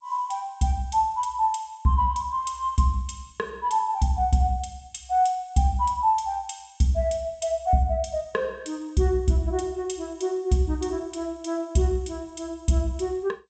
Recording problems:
lossy codec; G.722, log-spectral distance 3 dB, nothing above 8 kHz

